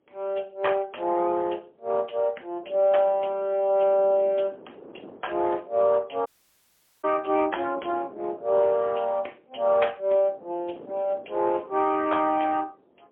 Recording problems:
phone line; 320 Hz to 3.3 kHz, AMR-NB, then MP3
wind on the microphone; below 580 Hz, SNR 22 dB
audio cutting out; at 6.5 s for 1 s

